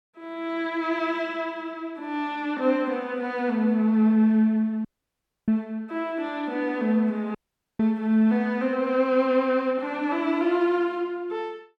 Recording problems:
dropout; at 5 s for 0.5 s and at 7.5 s

